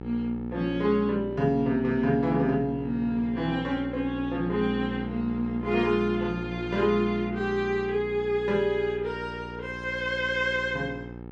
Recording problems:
hum; 60 Hz, harmonics up to 1.3 kHz, SNR 10 dB

